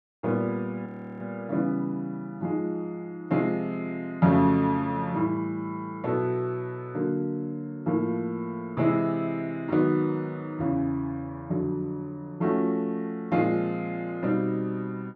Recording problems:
audio freezing; at 1 s

